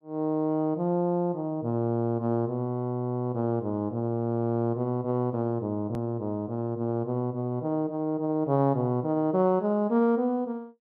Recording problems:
hard cut with a click; at 6 s

